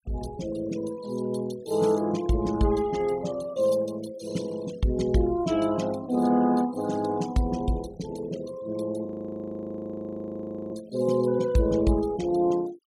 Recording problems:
denoising artefacts; signal-to-artefact ratio 19 dB
frozen audio; at 9 s for 1.5 s

